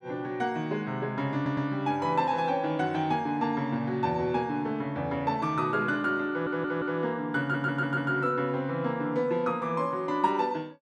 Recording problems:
audio stuttering; at 1.5 s, at 6.5 s and at 7.5 s

